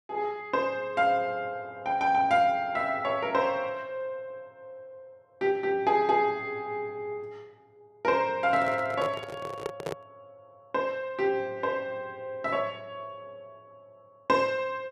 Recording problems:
handling noise; from 8.5 to 10 s; peak -1 dB vs average level

